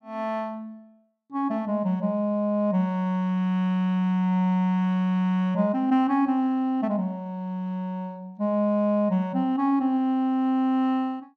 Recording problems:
none

